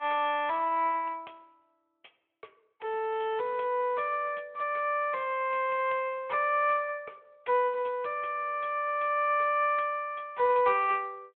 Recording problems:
phone line; 340 Hz to 3.4 kHz, Speex

